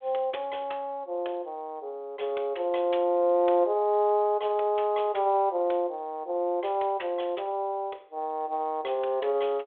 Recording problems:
telephone audio; 320 Hz to 3.6 kHz, G.726

